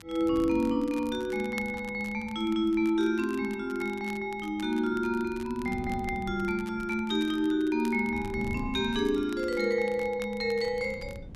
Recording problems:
wind on the microphone; below 190 Hz, SNR 17 dB
crackling; vinyl, SNR 22 dB

